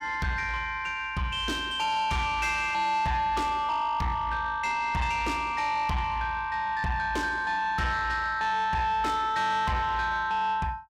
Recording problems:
distortion; soft clipping, signal-to-distortion ratio 11 dB

